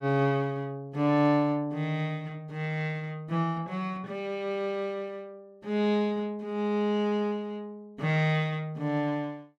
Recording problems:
none

